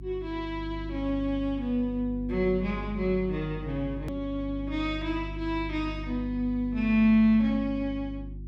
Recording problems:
electrical hum; 50 Hz, harmonics up to 350 Hz, SNR 11 dB
click at an edit; at 4 s

